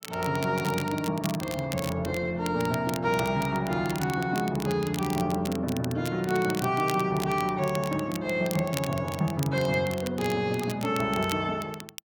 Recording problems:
crackling; vinyl, SNR 13 dB

